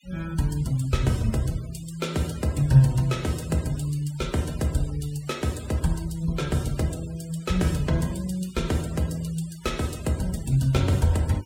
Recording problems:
noise reduction artefacts; signal-to-artefact ratio 19 dB

